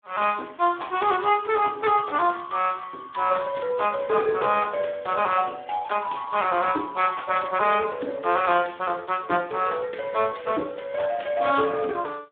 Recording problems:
phone line; 240 Hz to 3.5 kHz, Speex

